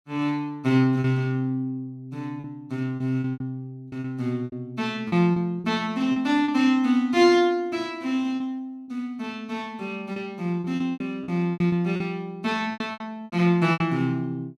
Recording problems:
lost packets; 10% of the sound replaced, filled with repeated pitch periods

